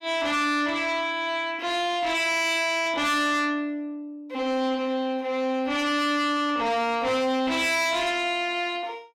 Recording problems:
distorted audio; soft clipping, signal-to-distortion ratio 8 dB

